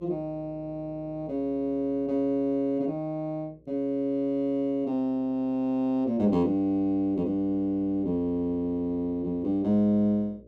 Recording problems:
electrical hum; 60 Hz, harmonics up to 600 Hz, SNR 28 dB

